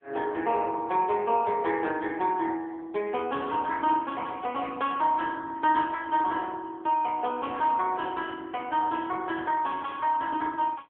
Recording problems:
telephone audio; 260 Hz to 3.4 kHz, AMR-NB

